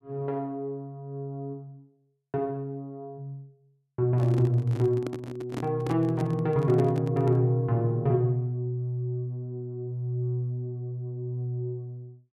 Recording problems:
microphone handling noise; from 4 to 7.5 s; peak -2 dB vs average level

